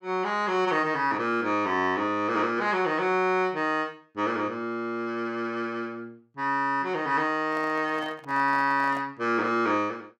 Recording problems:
handling noise; from 7.5 to 9 s; peak -10 dB vs average level

